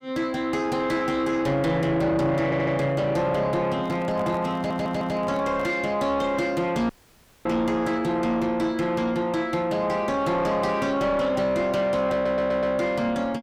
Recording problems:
distortion; soft clipping, signal-to-distortion ratio 10 dB
stutter; at 2.5 s, at 4.5 s and at 12 s
handling noise; from 4 to 5.5 s; peak -5 dB vs average level
dropout; at 7 s for 0.5 s

